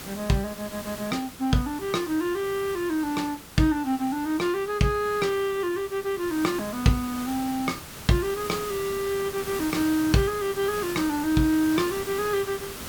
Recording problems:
background hiss; slope -3 dB per octave, SNR 12 dB

